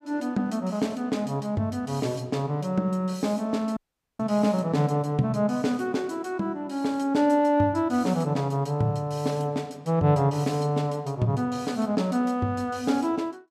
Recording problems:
audio cutting out; at 4 s

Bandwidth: 15.5 kHz